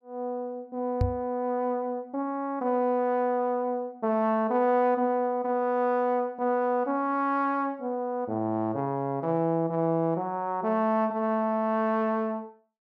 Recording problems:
microphone thump; at 1 s; peak +4 dB vs average level

